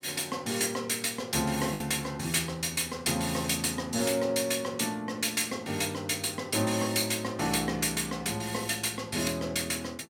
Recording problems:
lost packets; 0.6% of the sound replaced, filled with the last packet

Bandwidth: 17 kHz